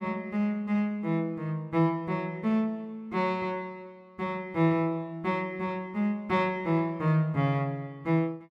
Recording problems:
none

